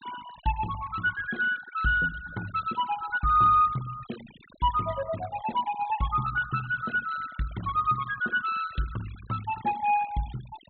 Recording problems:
treble cut off; nothing above 4 kHz
denoising artefacts; signal-to-artefact ratio 18 dB

